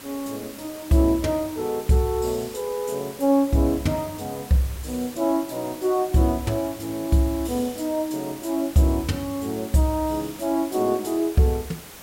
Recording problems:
hiss; slope -2 dB per octave, SNR 16 dB

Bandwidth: 16 kHz